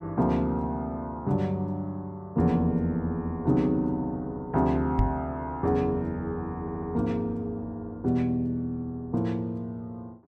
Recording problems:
knock on the microphone; at 5 s; peak +7 dB vs average level
audio stuttering; at 6.5 s

